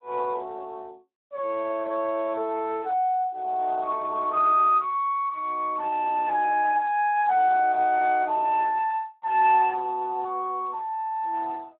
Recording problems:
telephone audio; 260 Hz to 3.3 kHz, Speex

